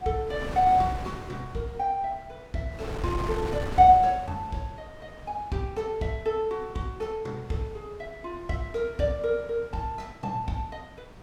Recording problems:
wind noise; below 620 Hz, SNR 14 dB

